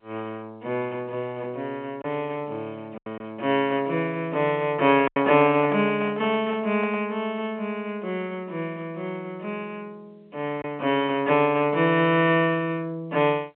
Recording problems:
telephone audio; 280 Hz to 3.6 kHz, G.711
packet loss; 1.6% of the sound replaced, filled with silence
handling noise; from 5 to 7 s; peak -6 dB vs average level

